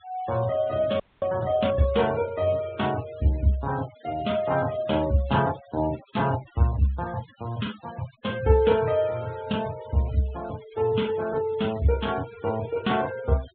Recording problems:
treble cut off; nothing above 4 kHz
denoising artefacts; signal-to-artefact ratio 20 dB
audio freezing; at 1 s

